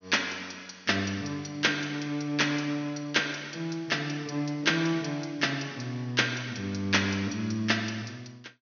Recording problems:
treble missing; nothing above 6.4 kHz

